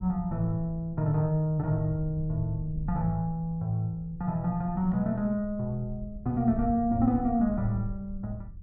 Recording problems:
rumble; below 94 Hz, SNR 13 dB

